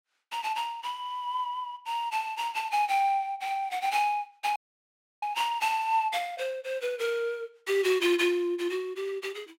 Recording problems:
dropout; at 4.5 s for 0.5 s

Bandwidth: 16 kHz